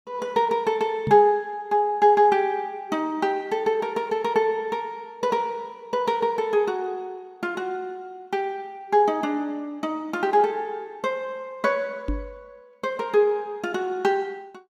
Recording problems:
microphone bump; at 1 s and at 12 s; peak 0 dB vs average level

